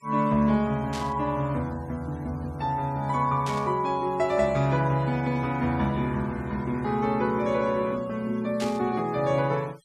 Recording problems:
noise reduction artefacts; signal-to-artefact ratio 26 dB
static burst; at 1 s, at 3.5 s and at 8.5 s; peak -6 dB vs average level

